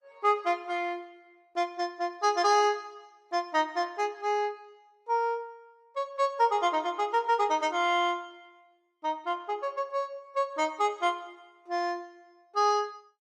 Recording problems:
codec artefacts; Opus, log-spectral distance 2 dB, nothing above 13.8 kHz

